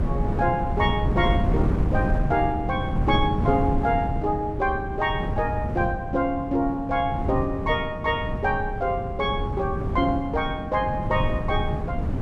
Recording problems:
wind noise; below 200 Hz, SNR 3 dB

